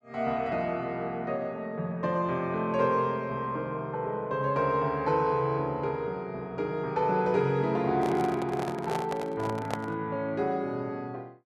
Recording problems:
handling noise; from 8 to 10 s; peak 0 dB vs average level

